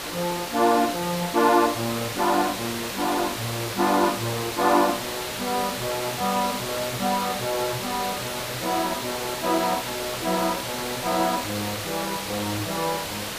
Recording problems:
hiss; slope -2 dB per octave, SNR 4 dB

